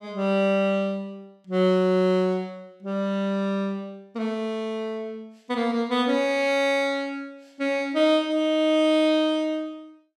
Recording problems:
none

